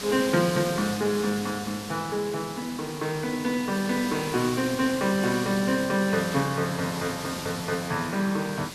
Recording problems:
background hiss; slope -2 dB per octave, SNR 9 dB

